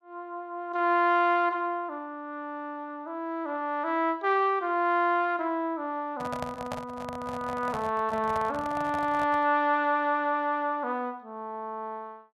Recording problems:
microphone handling noise; from 6 to 9.5 s; peak -3 dB vs average level

